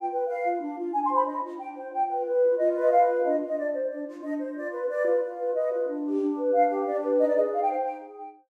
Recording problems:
none

